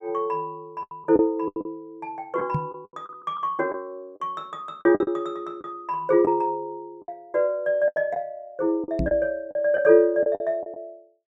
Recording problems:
packet loss; 9% of the sound replaced, filled with the last packet
microphone bump; at 2.5 s and at 9 s; peak +2 dB vs average level

